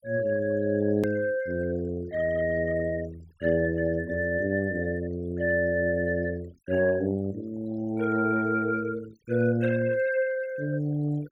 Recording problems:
noise reduction artefacts; signal-to-artefact ratio 22 dB
click at an edit; at 1 s

